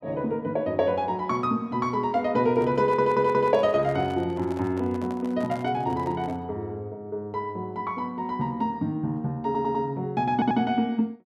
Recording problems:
microphone handling noise; from 2.5 to 6.5 s; peak -10 dB vs average level
stutter; at 3 s, at 9.5 s and at 10 s

